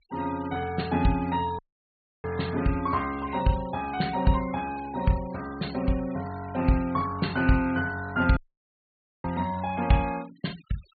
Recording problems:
treble missing; nothing above 4.5 kHz
denoising artefacts; signal-to-artefact ratio 19 dB
audio cutting out; at 1.5 s for 0.5 s and at 8.5 s for 1 s

